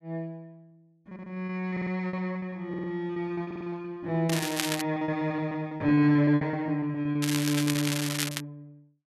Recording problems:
lost packets; 17% of the sound replaced, filled with repeated pitch periods
stutter; 4 times, first at 1 s
crackle; at 4.5 s and from 7 to 8.5 s; loose cable, SNR 3 dB

